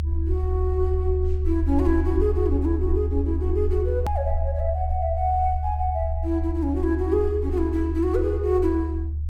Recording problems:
low-frequency rumble; below 76 Hz, strongest tone 76 Hz, SNR 1 dB
edit click; at 4 s

